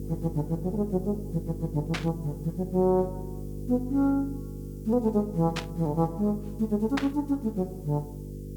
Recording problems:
hum; 50 Hz, harmonics up to 500 Hz, SNR 10 dB
background hiss; SNR 28 dB
static burst; at 2 s, at 5.5 s and at 7 s; peak +2 dB vs average level

